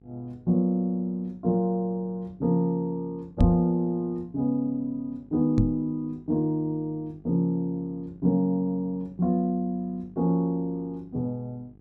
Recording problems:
electrical hum; 50 Hz, harmonics up to 800 Hz, SNR 26 dB
microphone bump; at 3.5 s and at 5.5 s; peak +9 dB vs average level

